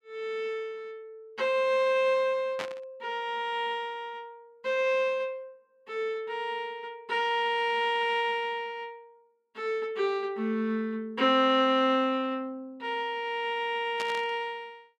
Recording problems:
static burst; at 2.5 s and at 14 s; peak -2 dB vs average level

